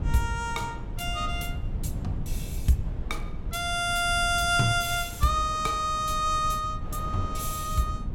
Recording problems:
rumble; below 110 Hz, SNR 9 dB
wind on the microphone; below 510 Hz, SNR 18 dB

